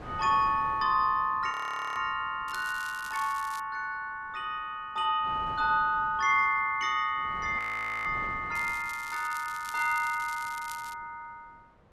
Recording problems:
wind noise; below 1 kHz, SNR 20 dB
frozen audio; at 1.5 s and at 7.5 s
crackling; from 2.5 to 3.5 s and from 8.5 to 11 s; loose cable, SNR 17 dB

